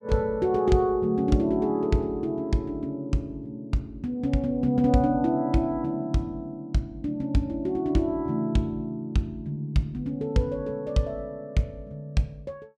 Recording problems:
none

